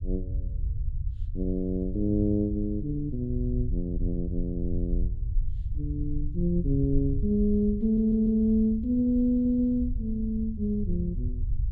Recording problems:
rumble; below 74 Hz, SNR 7 dB
stutter; at 8 s and at 9.5 s

